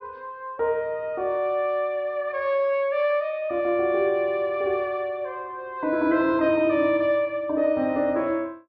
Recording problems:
treble missing; nothing above 5.8 kHz

